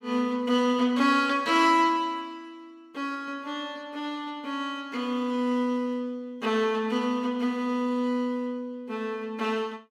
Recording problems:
none

